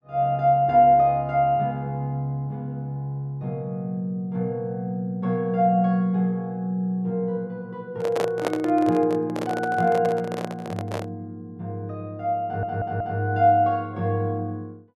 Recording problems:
microphone handling noise; from 8 to 11 s; peak +2 dB vs average level
audio stuttering; at 12 s

